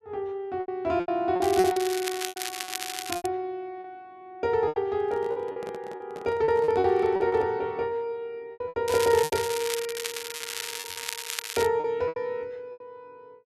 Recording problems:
packet loss; 11% of the sound replaced, filled with repeated pitch periods
crackling; from 1.5 to 3.5 s and from 9 to 12 s; loose cable, SNR 6 dB
handling noise; from 5 to 7.5 s; peak -8 dB vs average level

